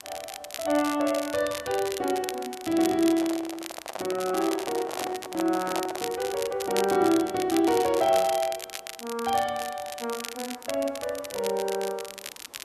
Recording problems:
hiss; SNR 28 dB
crackling; vinyl, SNR 11 dB
handling noise; from 3 to 6 s; peak -3 dB vs average level

